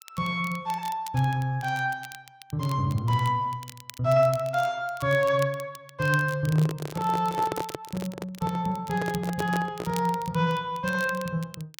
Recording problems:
crackle; vinyl, SNR 18 dB
microphone handling noise; from 6.5 to 10 s; peak 0 dB vs average level

